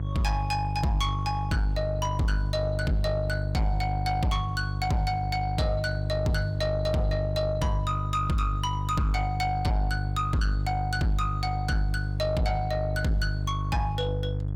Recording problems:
distorted audio; soft clipping, signal-to-distortion ratio 11 dB
hum; 50 Hz, harmonics up to 500 Hz, SNR 2 dB

